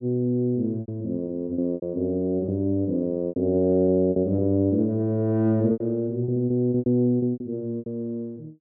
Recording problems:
treble cut off; nothing above 8 kHz
lost packets; 11% of the sound replaced, filled with repeated pitch periods

